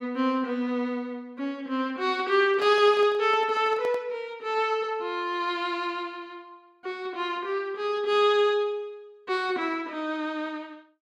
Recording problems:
handling noise; from 2.5 to 4 s; peak -9 dB vs average level

